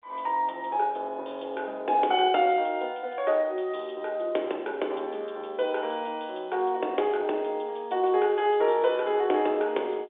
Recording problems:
phone line; 280 Hz to 3.6 kHz, G.711

